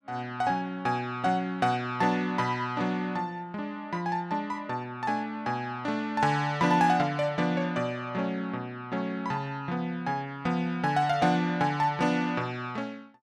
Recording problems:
none

